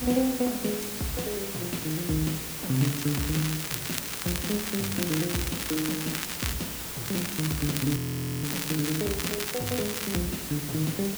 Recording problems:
hum; 60 Hz, harmonics up to 480 Hz, SNR 19 dB
hiss; slope -1 dB per octave, SNR 3 dB
crackling; from 3 to 6.5 s and from 7 to 10 s; loose cable, SNR 4 dB
frozen audio; at 8 s

